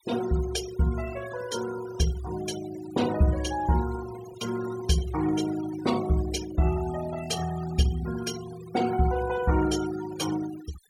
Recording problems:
denoising artefacts; signal-to-artefact ratio 13 dB

